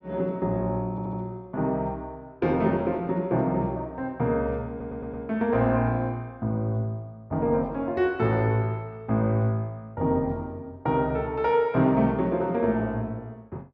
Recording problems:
stutter; at 1 s and at 4.5 s

